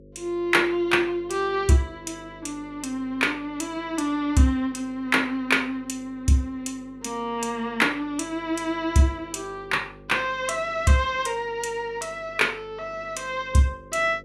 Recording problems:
electrical hum; 50 Hz, harmonics up to 550 Hz, SNR 23 dB

